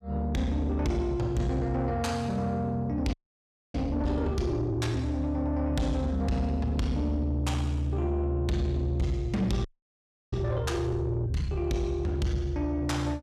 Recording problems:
distortion; soft clipping, signal-to-distortion ratio 11 dB
audio freezing; at 3 s for 0.5 s and at 9.5 s for 0.5 s

